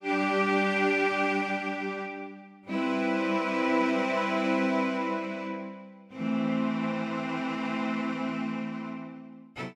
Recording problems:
none

